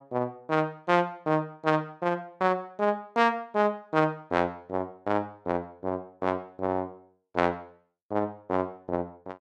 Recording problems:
none

